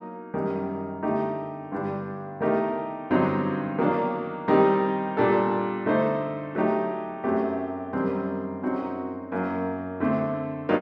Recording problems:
none

